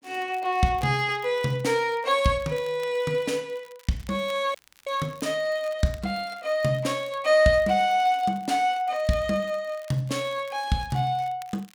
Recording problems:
crackling; vinyl, SNR 27 dB
dropout; at 4.5 s

